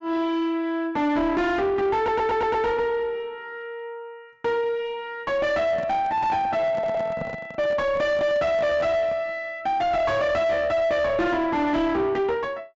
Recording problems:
low-pass filter; nothing above 8 kHz
distortion; soft clipping, signal-to-distortion ratio 7 dB
audio stuttering; at 2 s and at 6.5 s
handling noise; from 5.5 to 9.5 s; peak -4 dB vs average level

